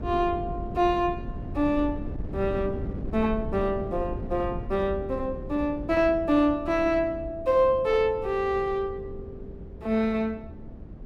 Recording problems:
wind on the microphone; below 220 Hz, SNR 11 dB

